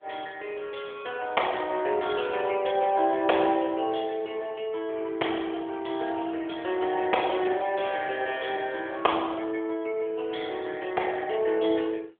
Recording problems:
phone line; 340 Hz to 3.4 kHz, AMR-NB

